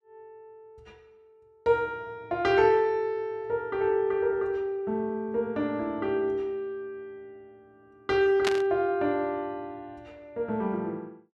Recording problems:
burst of static; at 8.5 s; peak +3 dB vs average level

